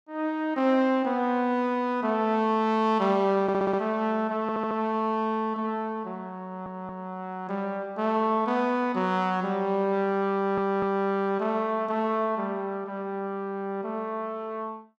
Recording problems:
stutter; 4 times, first at 3.5 s

